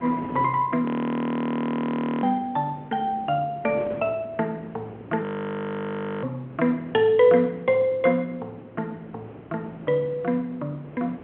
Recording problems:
telephone audio; 190 Hz to 3.4 kHz, G.711
wind on the microphone; below 590 Hz, SNR 18 dB
audio freezing; at 1 s for 1.5 s and at 5 s for 1 s

